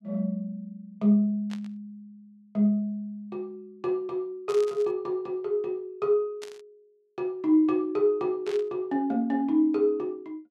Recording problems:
static burst; 4 times, first at 1.5 s; peak -11 dB vs average level

